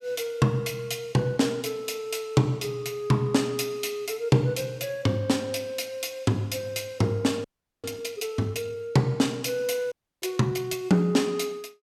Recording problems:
audio freezing; at 7.5 s and at 10 s

